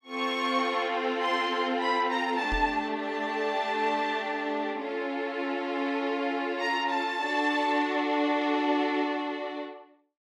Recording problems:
knock on the microphone; at 2.5 s; peak -1 dB vs average level

